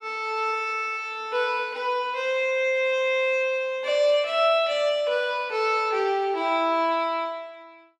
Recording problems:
none

